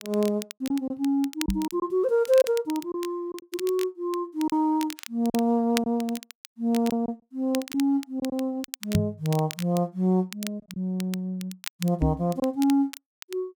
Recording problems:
crackle; vinyl, SNR 14 dB
lost packets; 4% of the sound replaced, filled with silence
microphone thump; at 1.5 s, at 9 s and at 12 s; peak +7 dB vs average level

